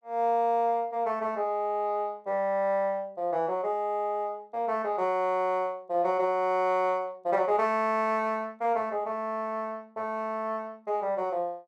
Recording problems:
none

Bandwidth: 12.5 kHz